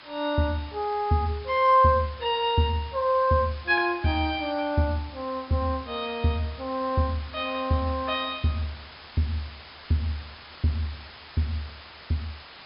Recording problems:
treble cut off; nothing above 5.5 kHz
background hiss; SNR 18 dB

